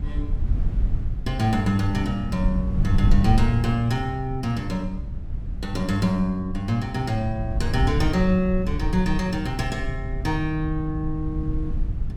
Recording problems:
wind on the microphone; below 90 Hz, SNR 4 dB

